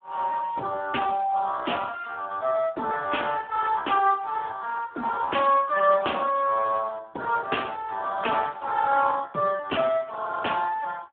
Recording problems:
telephone audio; 300 Hz to 3.4 kHz, Speex

